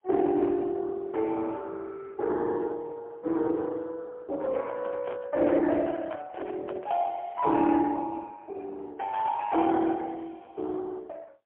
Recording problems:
phone line; 240 Hz to 3.6 kHz, AMR-NB, then MP3
handling noise; from 4.5 to 7 s; peak -6 dB vs average level

